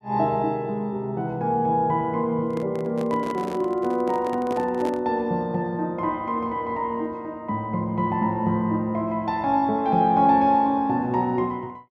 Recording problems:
microphone handling noise; from 2.5 to 5 s; peak -5 dB vs average level

